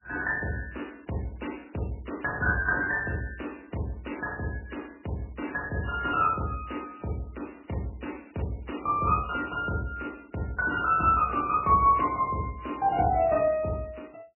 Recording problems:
lossy codec; MP3, log-spectral distance 5 dB, nothing above 2.5 kHz

